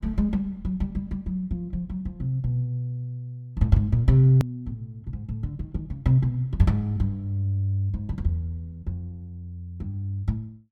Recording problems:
click at an edit; at 4.5 s

